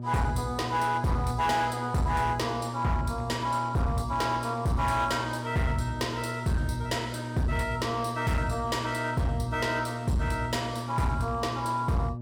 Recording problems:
distorted audio; hard clipping, signal-to-distortion ratio 11 dB
electrical hum; 60 Hz, harmonics up to 600 Hz, SNR 9 dB

